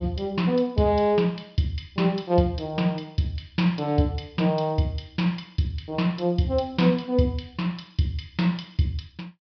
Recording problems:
low-pass filter; nothing above 5.5 kHz

